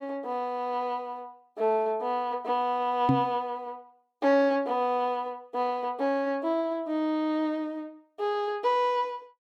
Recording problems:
microphone thump; at 3 s; peak +8 dB vs average level

